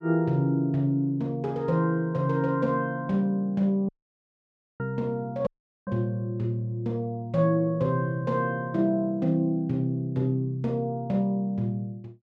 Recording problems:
dropout; at 4 s for 1 s and at 5.5 s

